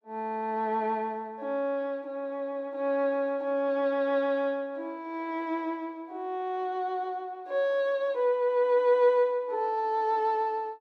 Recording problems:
none

